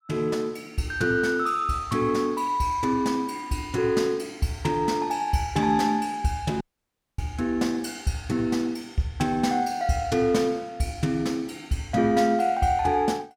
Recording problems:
audio cutting out; at 6.5 s for 0.5 s

